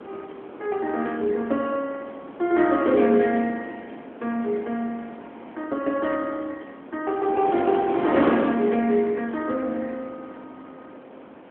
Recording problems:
phone line; 150 Hz to 3.6 kHz, AMR-NB
wind on the microphone; below 850 Hz, SNR 10 dB

